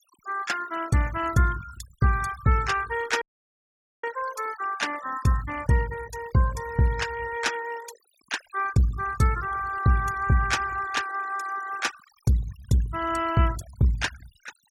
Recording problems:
denoising artefacts; signal-to-artefact ratio 16 dB
dropout; at 3 s for 1 s

